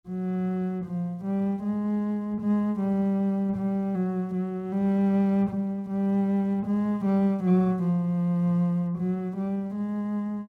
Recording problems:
none

